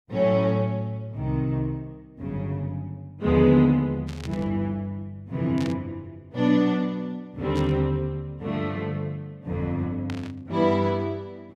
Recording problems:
static burst; 4 times, first at 4 s; peak -9 dB vs average level

